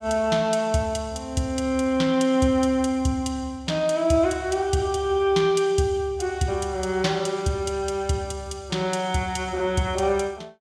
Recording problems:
none

